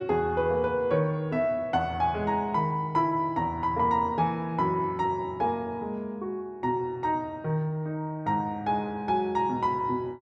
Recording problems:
none

